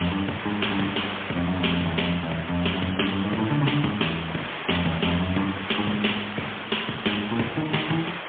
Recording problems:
telephone audio; 220 Hz to 3.4 kHz, AMR-NB, then MP3
background hiss; SNR 7 dB

